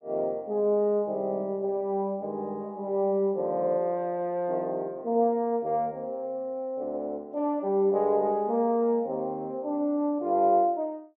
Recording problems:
none

